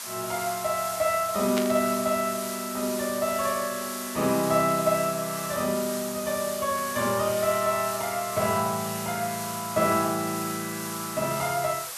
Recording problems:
hiss; SNR 7 dB
static burst; at 1.5 s; peak 0 dB vs average level

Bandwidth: 13.5 kHz